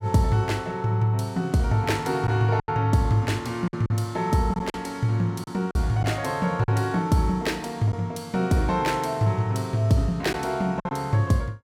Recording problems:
packet loss; 4% of the sound replaced, filled with silence

